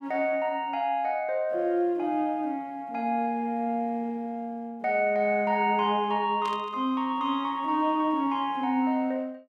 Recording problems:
burst of static; at 6.5 s; peak -11 dB vs average level

